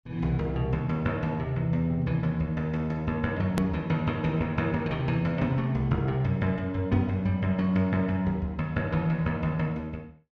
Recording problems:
hard cut with a click; at 3.5 s

